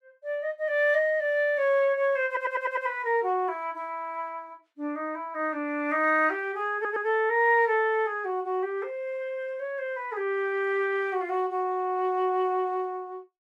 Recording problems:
stutter; at 2.5 s and at 6.5 s

